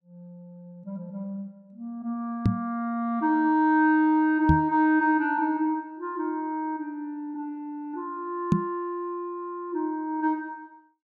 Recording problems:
microphone bump; at 2.5 s, at 4.5 s and at 8.5 s; peak +8 dB vs average level

